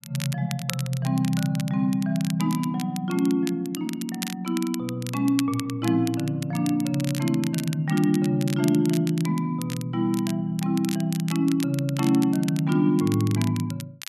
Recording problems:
crackling; vinyl, SNR 14 dB

